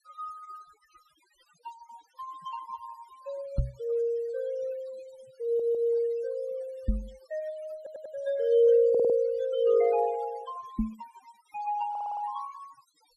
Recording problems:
noise reduction artefacts; signal-to-artefact ratio 23 dB
microphone thump; at 3.5 s, at 7 s and at 11 s; peak +4 dB vs average level
audio stuttering; 4 times, first at 5.5 s

